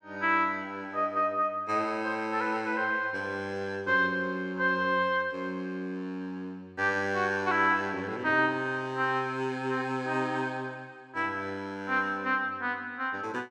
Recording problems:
none

